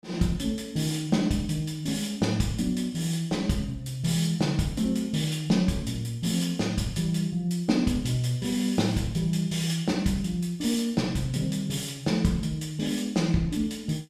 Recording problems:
none

